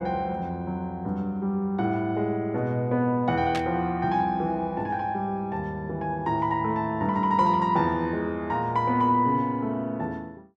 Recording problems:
static burst; at 3.5 s; peak -2 dB vs average level

